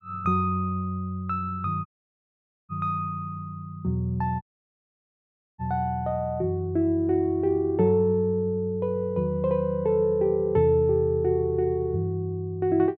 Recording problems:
dropout; at 2 s for 1 s and at 4.5 s for 1 s

